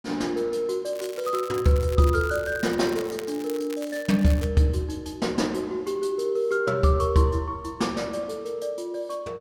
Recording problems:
crackle; from 1 to 4.5 s; loose cable, SNR 17 dB

